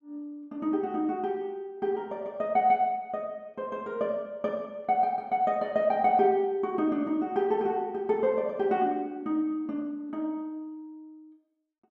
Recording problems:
none

